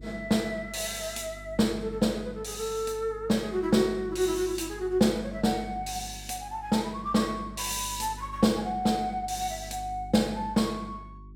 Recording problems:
hum; 50 Hz, harmonics up to 400 Hz, SNR 17 dB

